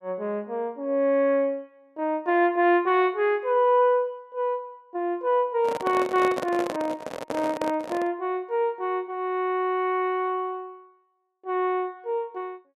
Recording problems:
handling noise; from 5.5 to 8 s; peak -1 dB vs average level

